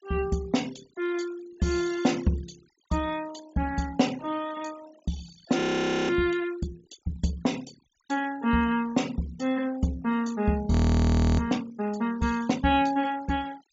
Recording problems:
treble cut off; nothing above 8 kHz
noise reduction artefacts; signal-to-artefact ratio 20 dB
audio freezing; at 5.5 s for 0.5 s and at 11 s for 0.5 s

